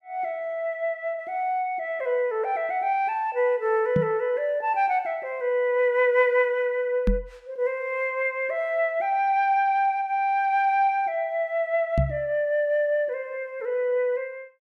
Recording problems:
microphone bump; at 4 s, at 7 s and at 12 s; peak +4 dB vs average level

